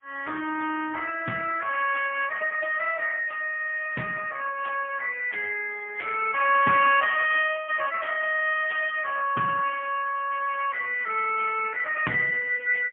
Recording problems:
phone line; 240 Hz to 3.3 kHz, AMR-NB, then MP3

